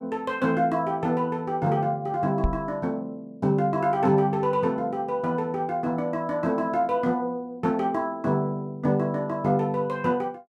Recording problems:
microphone bump; at 2.5 s; peak +4 dB vs average level

